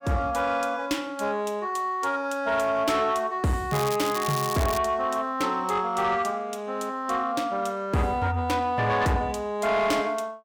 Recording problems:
distorted audio; soft clipping, signal-to-distortion ratio 12 dB
crackle; from 3.5 to 5 s; loose cable, SNR 8 dB

